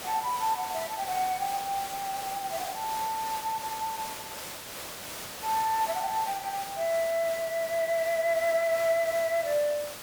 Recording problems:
hiss; slope -2 dB per octave, SNR 9 dB

